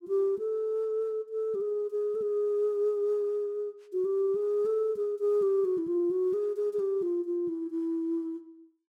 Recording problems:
none

